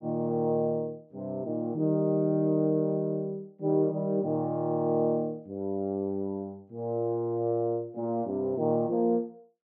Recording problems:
none

